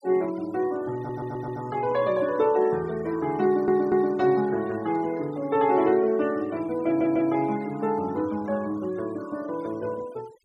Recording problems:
noise reduction artefacts; signal-to-artefact ratio 22 dB
stutter; at 1 s, at 3.5 s and at 7 s

